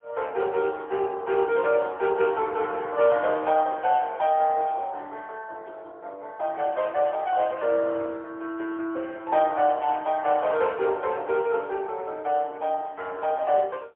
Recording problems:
phone line; 300 Hz to 4 kHz, AMR-NB, then MP3

